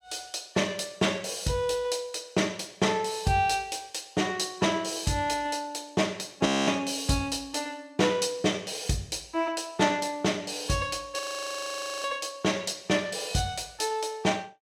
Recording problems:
frozen audio; at 6.5 s and at 11 s for 1 s

